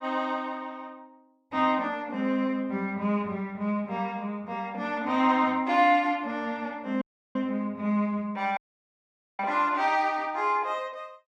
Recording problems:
dropout; at 7 s and at 8.5 s for 1 s

